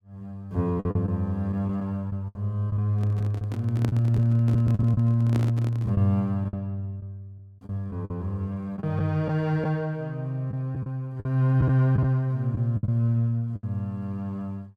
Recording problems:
lost packets; 7% of the sound replaced, filled with the last packet
microphone handling noise; from 3 to 6 s; peak -2 dB vs average level

